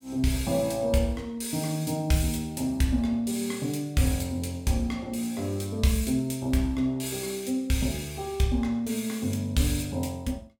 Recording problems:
none

